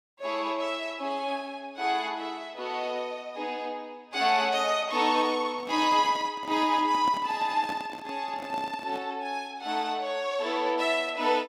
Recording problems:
handling noise; from 5.5 to 9 s; peak -5 dB vs average level

